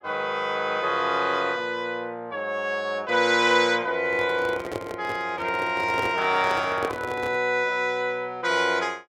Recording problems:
handling noise; from 4 to 7.5 s; peak -2 dB vs average level

